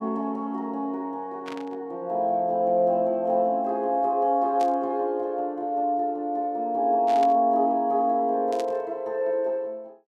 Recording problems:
burst of static; 4 times, first at 1.5 s; peak -10 dB vs average level

